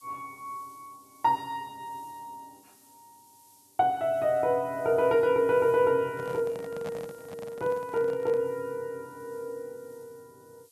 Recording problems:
background hiss; SNR 29 dB
handling noise; from 6 to 8.5 s; peak -8 dB vs average level

